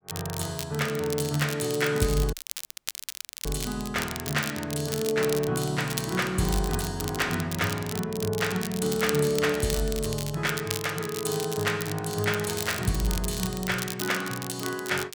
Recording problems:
crackling; vinyl, SNR 8 dB
audio cutting out; at 2.5 s for 1 s

